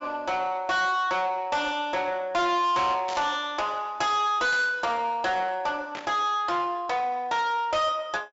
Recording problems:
treble missing; nothing above 8 kHz
distortion; soft clipping, signal-to-distortion ratio 10 dB
burst of static; at 3 s, at 4.5 s and at 6 s; peak -7 dB vs average level

